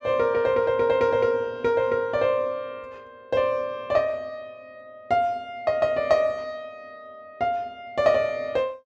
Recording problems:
none

